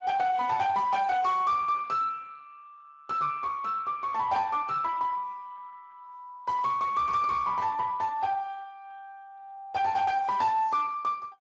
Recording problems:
lossy codec; Speex, log-spectral distance 3 dB, nothing above 7.3 kHz
distorted audio; soft clipping, signal-to-distortion ratio 11 dB

